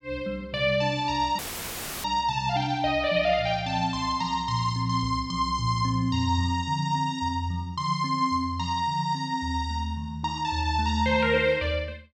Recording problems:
audio cutting out; at 1.5 s for 0.5 s; filled with static

